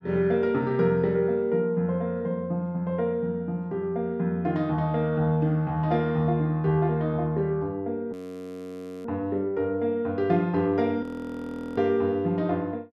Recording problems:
audio freezing; at 8 s for 1 s and at 11 s for 0.5 s

